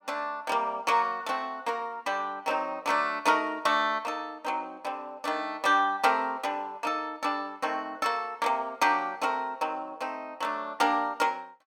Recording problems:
none

